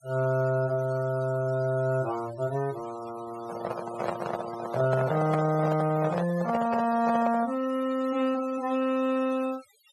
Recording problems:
noise reduction artefacts; signal-to-artefact ratio 17 dB
microphone handling noise; from 3.5 to 7.5 s; peak +1 dB vs average level

